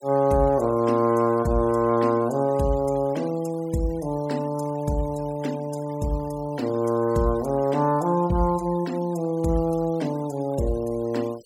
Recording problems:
noise reduction artefacts; signal-to-artefact ratio 23 dB

